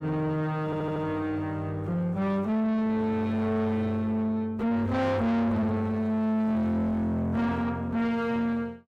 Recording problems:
distorted audio; soft clipping, signal-to-distortion ratio 7 dB
audio stuttering; at 0.5 s

